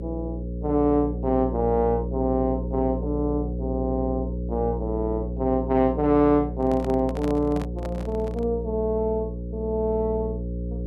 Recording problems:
electrical hum; 60 Hz, harmonics up to 540 Hz, SNR 6 dB
handling noise; from 6.5 to 8.5 s; peak -6 dB vs average level

